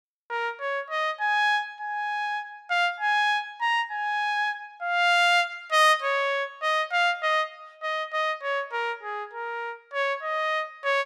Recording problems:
none

